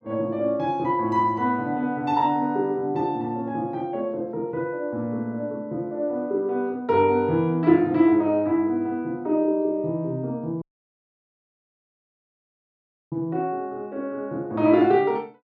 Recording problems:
dropout; at 11 s for 2.5 s

